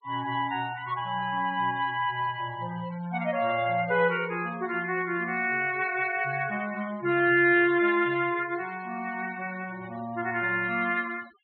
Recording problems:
low-pass filter; nothing above 4.3 kHz
noise reduction artefacts; signal-to-artefact ratio 21 dB

